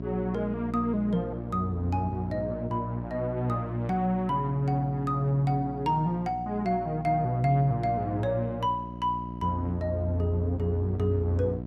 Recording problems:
electrical hum; 60 Hz, harmonics up to 960 Hz, SNR 9 dB

